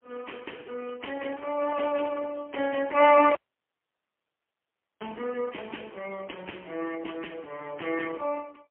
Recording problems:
phone line; 280 Hz to 3.2 kHz, AMR-NB, then MP3
dropout; at 3.5 s for 1.5 s

